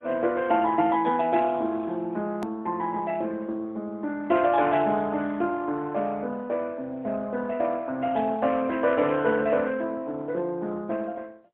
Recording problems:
phone line; 170 Hz to 3.5 kHz, AMR-NB, then MP3
click at an edit; at 2.5 s

